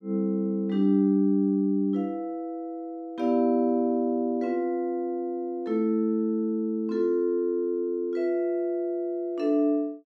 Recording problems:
none

